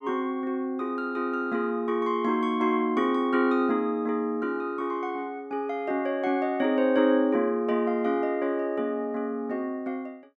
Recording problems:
none

